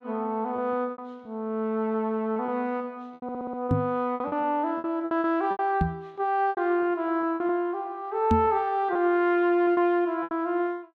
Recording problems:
lost packets; 10% of the sound replaced, filled with repeated pitch periods
audio stuttering; at 3 s
knock on the microphone; at 3.5 s, at 6 s and at 8.5 s; peak +6 dB vs average level

